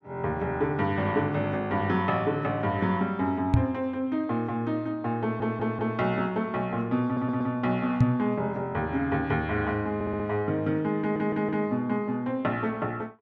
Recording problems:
knock on the microphone; at 3.5 s and at 8 s; peak +10 dB vs average level
stutter; 4 times, first at 5 s

